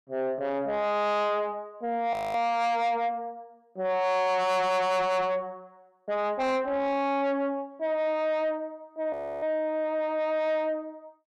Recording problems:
distorted audio; soft clipping, signal-to-distortion ratio 7 dB
audio freezing; at 2 s and at 9 s

